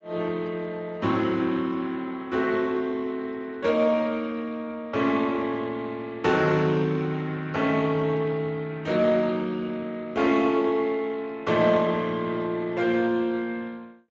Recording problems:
lossy compression; Speex, log-spectral distance 3 dB

